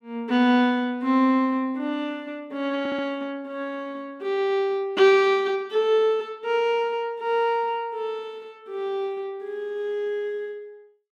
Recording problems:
audio stuttering; at 3 s

